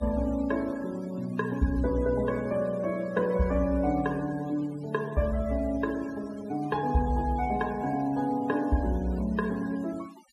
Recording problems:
noise reduction artefacts; signal-to-artefact ratio 21 dB

